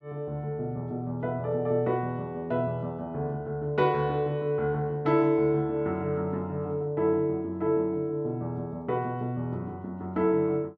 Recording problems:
none

